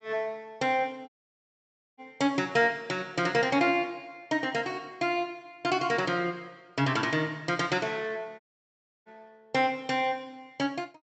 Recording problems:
low-pass filter; nothing above 8 kHz
dropout; at 1 s for 1 s and at 8.5 s for 0.5 s

